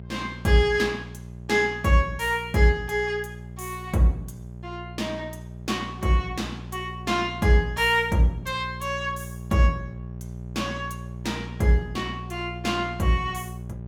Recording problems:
electrical hum; 60 Hz, harmonics up to 780 Hz, SNR 13 dB

